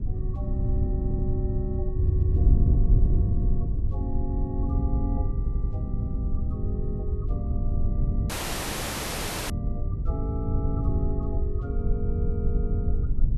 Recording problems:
rumble; below 56 Hz, SNR 5 dB
wind noise; below 96 Hz, SNR -8 dB
stutter; at 1 s, at 2 s and at 5.5 s
dropout; at 8.5 s for 1 s

